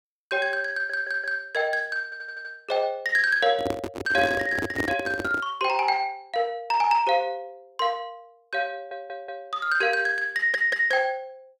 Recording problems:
audio stuttering; 4 times, first at 0.5 s
handling noise; from 3.5 to 5.5 s; peak 0 dB vs average level

